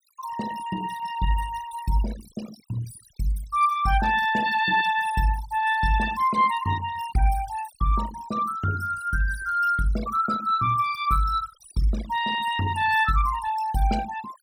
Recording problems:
noise reduction artefacts; signal-to-artefact ratio 13 dB

